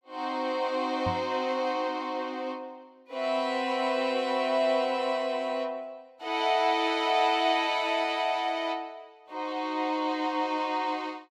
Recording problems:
microphone thump; at 1 s; peak -3 dB vs average level

